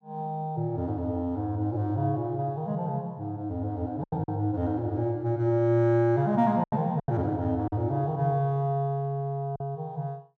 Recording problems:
lost packets; 4% of the sound replaced, filled with silence

